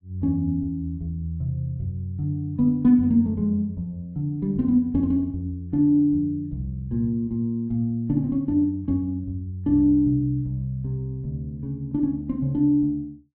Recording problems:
treble missing; nothing above 5.2 kHz

